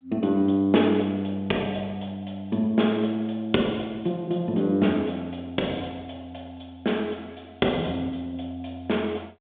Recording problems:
phone line; 170 Hz to 3.7 kHz, G.726

